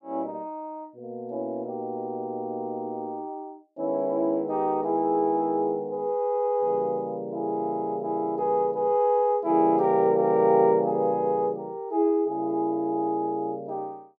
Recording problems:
none

